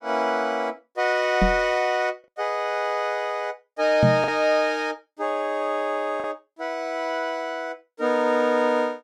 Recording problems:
lost packets; 1% of the sound replaced, filled with the last packet
microphone thump; at 1.5 s and at 4 s; peak +7 dB vs average level

